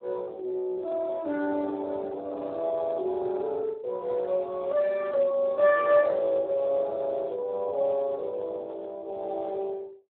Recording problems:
phone line; 300 Hz to 2.9 kHz, Speex

